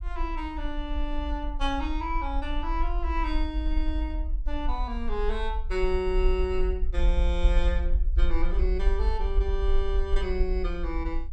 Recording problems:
rumble; below 50 Hz, SNR -2 dB

